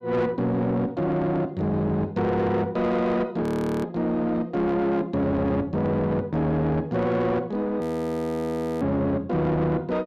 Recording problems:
distortion; soft clipping, signal-to-distortion ratio 10 dB
frozen audio; at 3.5 s and at 8 s for 1 s

